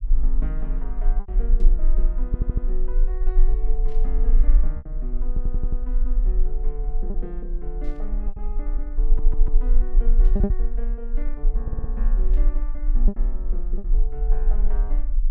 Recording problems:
low-frequency rumble; below 36 Hz, strongest tone 22 Hz, SNR -14 dB
packet loss; 4% of the sound replaced, filled with repeated pitch periods
static burst; 5 times, first at 1.5 s; peak -11 dB vs average level
audio stuttering; 4 times, first at 2.5 s

